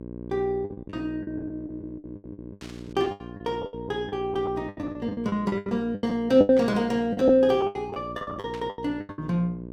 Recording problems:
hum; 60 Hz, harmonics up to 900 Hz, SNR 14 dB
lost packets; 20% of the sound replaced, filled with the last packet
burst of static; at 2.5 s, at 6.5 s and at 8.5 s; peak -12 dB vs average level

